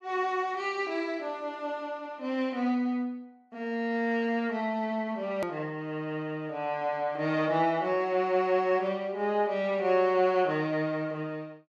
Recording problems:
click at an edit; at 5.5 s

